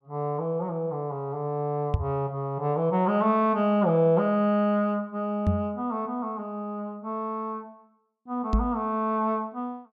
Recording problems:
microphone bump; at 2 s, at 5.5 s and at 8.5 s; peak +6 dB vs average level

